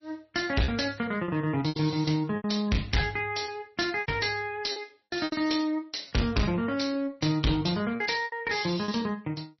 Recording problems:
codec artefacts; MP3, log-spectral distance 5 dB, nothing above 5.8 kHz
distorted audio; hard clipping, uneven, signal-to-distortion ratio 7 dB
packet loss; 8% of the sound replaced, filled with repeated pitch periods

